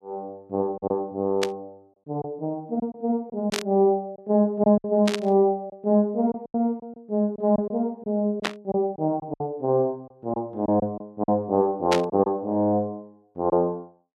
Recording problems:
lost packets; 6% of the sound replaced, filled with silence
burst of static; 5 times, first at 1.5 s; peak +3 dB vs average level

